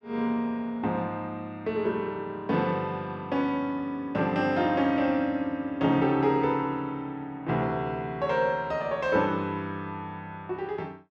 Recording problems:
none

